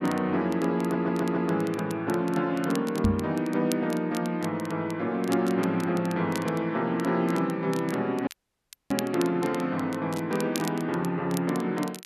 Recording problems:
crackle; vinyl, SNR 17 dB
stutter; at 1 s
microphone bump; at 3 s; peak +7 dB vs average level
dropout; at 8.5 s for 0.5 s

